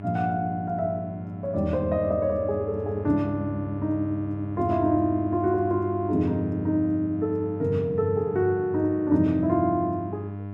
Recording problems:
electrical hum; 50 Hz, harmonics up to 1.1 kHz, SNR 9 dB

